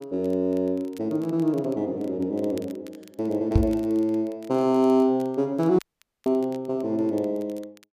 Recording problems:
crackle; vinyl, SNR 29 dB
knock on the microphone; at 3.5 s; peak +8 dB vs average level
dropout; at 6 s

